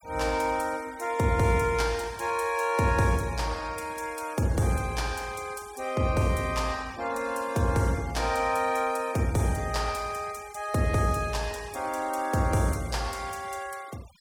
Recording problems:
denoising artefacts; signal-to-artefact ratio 20 dB

